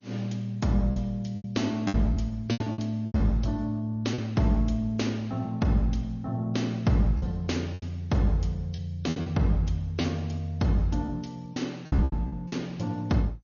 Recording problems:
lossy compression; MP3, then MP2, log-spectral distance 2 dB, nothing above 6.7 kHz
packet loss; 8% of the sound replaced, filled with repeated pitch periods

